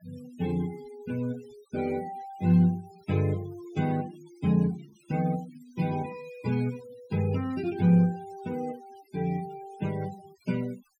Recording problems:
denoising artefacts; signal-to-artefact ratio 19 dB

